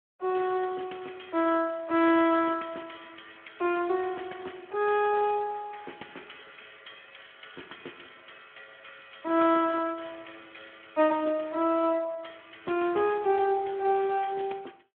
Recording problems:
telephone audio; 240 Hz to 3.4 kHz, Speex

